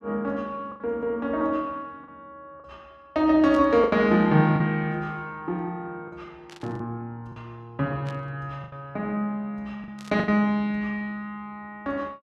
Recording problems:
lost packets; 5% of the sound replaced, filled with the last packet
static burst; 4 times, first at 3.5 s; peak -14 dB vs average level

